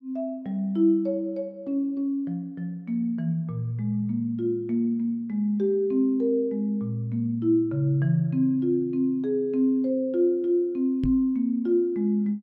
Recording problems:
microphone thump; at 11 s; peak 0 dB vs average level

